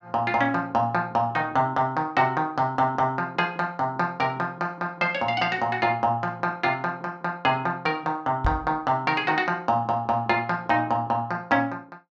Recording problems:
microphone thump; at 8.5 s; peak +2 dB vs average level

